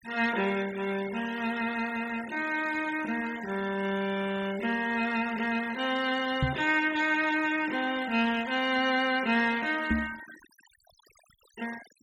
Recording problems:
denoising artefacts; signal-to-artefact ratio 16 dB
microphone bump; at 6.5 s and at 10 s; peak +5 dB vs average level

